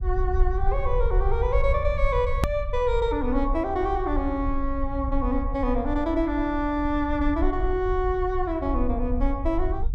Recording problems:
low-frequency rumble; below 58 Hz, SNR 4 dB
click at an edit; at 2.5 s

